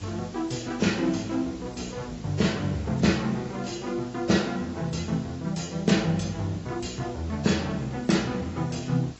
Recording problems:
lossy compression; AAC, log-spectral distance 5 dB, nothing above 7.8 kHz
hum; 50 Hz, harmonics up to 1.1 kHz, SNR 25 dB
hiss; slope -1 dB per octave, SNR 21 dB

